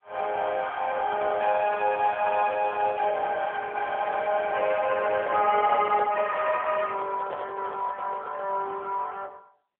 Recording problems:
phone line; 340 Hz to 2.3 kHz, AMR-NB
microphone handling noise; from 5 to 8.5 s; peak -7 dB vs average level

